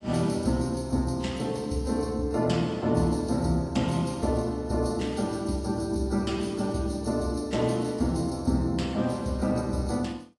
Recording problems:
lossy codec; AAC, log-spectral distance 3 dB, nothing above 11 kHz

